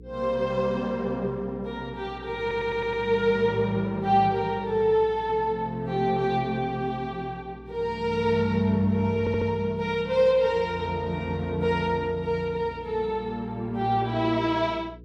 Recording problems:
hum; 60 Hz, harmonics up to 480 Hz, SNR 21 dB
audio stuttering; at 2.5 s and at 9 s

